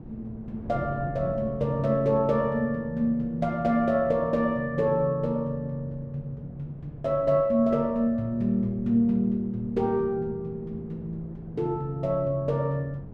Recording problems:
wind on the microphone; below 270 Hz, SNR 17 dB

